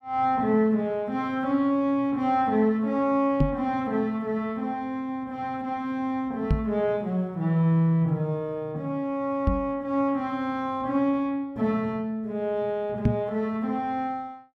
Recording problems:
knock on the microphone; 4 times, first at 3.5 s; peak +7 dB vs average level

